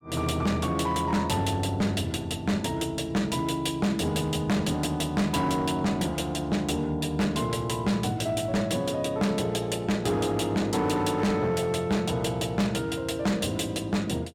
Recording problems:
distorted audio; hard clipping, signal-to-distortion ratio 6 dB

